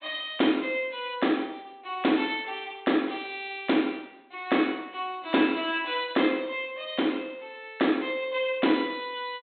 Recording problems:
treble missing; nothing above 4 kHz

